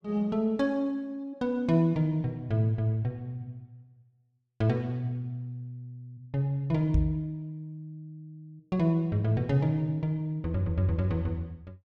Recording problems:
microphone thump; at 7 s; peak +6 dB vs average level

